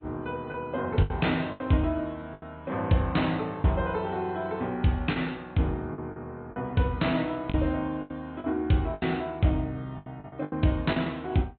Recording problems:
low-pass filter; nothing above 4.1 kHz
lossy codec; AAC, log-spectral distance 2 dB
packet loss; 9% of the sound replaced, filled with the last packet

